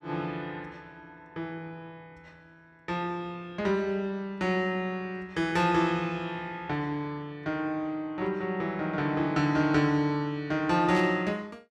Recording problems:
burst of static; at 11 s; peak -8 dB vs average level

